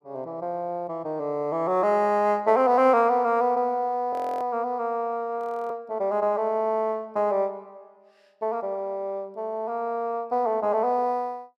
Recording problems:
audio freezing; at 4 s and at 5.5 s

